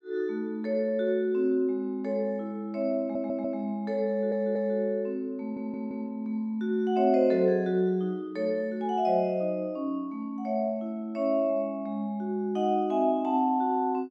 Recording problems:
audio stuttering; at 3 s, at 4 s and at 5.5 s

